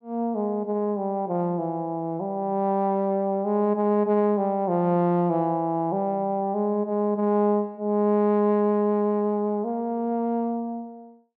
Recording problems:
none

